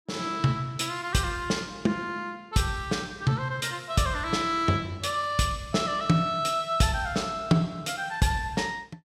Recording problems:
none

